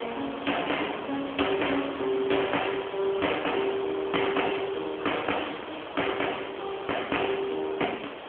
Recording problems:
telephone audio; 240 Hz to 3.3 kHz, AMR-NB
background hiss; SNR 9 dB

